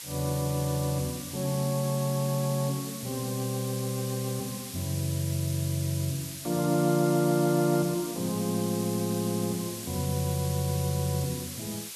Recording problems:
background hiss; slope +3 dB per octave, SNR 9 dB

